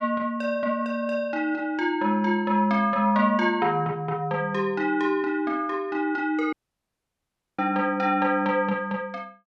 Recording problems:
audio cutting out; at 6.5 s for 1 s

